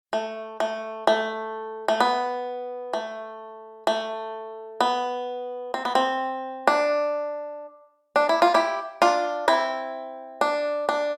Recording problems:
none

